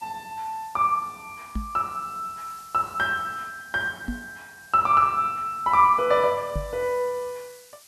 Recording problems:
background hiss; slope +3 dB per octave, SNR 25 dB
microphone bump; at 1.5 s, at 4 s and at 6.5 s; peak -2 dB vs average level

